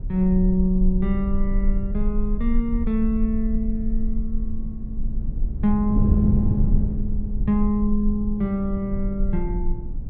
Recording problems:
low-frequency rumble; below 40 Hz, strongest tone 20 Hz, SNR 5 dB
wind noise; below 160 Hz, SNR 6 dB

